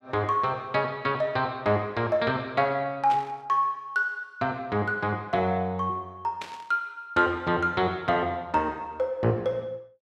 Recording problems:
static burst; at 3 s and at 6.5 s; peak -7 dB vs average level

